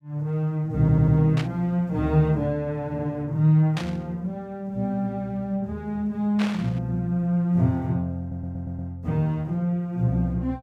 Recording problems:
audio stuttering; at 1 s and at 8 s
static burst; at 1.5 s, at 4 s and at 6.5 s; peak -4 dB vs average level

